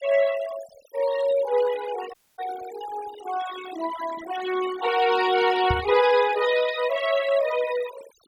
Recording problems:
denoising artefacts; signal-to-artefact ratio 12 dB
audio cutting out; at 2 s
microphone thump; at 5.5 s; peak +1 dB vs average level

